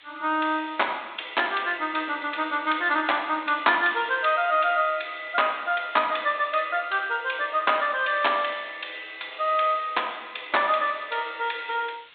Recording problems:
low-pass filter; nothing above 4 kHz
background hiss; SNR 25 dB

